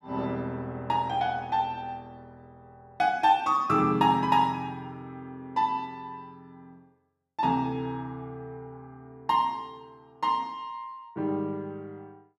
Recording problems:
none

